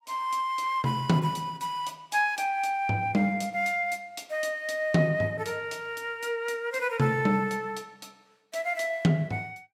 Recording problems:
none

